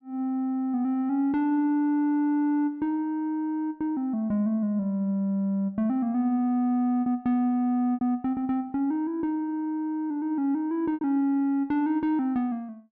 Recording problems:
packet loss; 1.8% of the sound replaced, filled with repeated pitch periods

